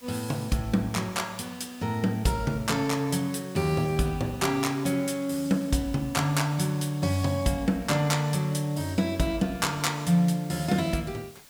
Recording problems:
hiss; slope 0 dB per octave, SNR 23 dB

